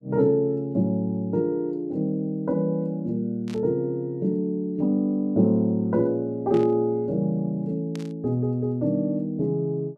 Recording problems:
burst of static; at 3.5 s, at 6.5 s and at 8 s; peak -14 dB vs average level

